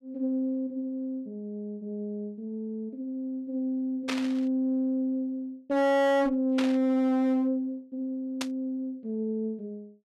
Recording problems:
distortion; hard clipping, uneven, signal-to-distortion ratio 7 dB
burst of static; at 4 s, at 6.5 s and at 8.5 s; peak +1 dB vs average level

